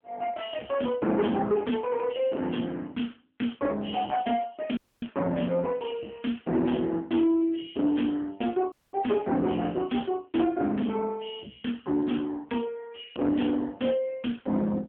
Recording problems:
telephone audio; 150 Hz to 3.3 kHz, AMR-NB
distortion; soft clipping, signal-to-distortion ratio 11 dB
audio cutting out; at 5 s and at 8.5 s

